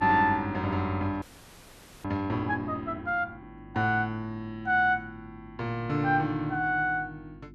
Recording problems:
hum; 50 Hz, harmonics up to 350 Hz, SNR 20 dB
audio freezing; at 1 s for 1 s

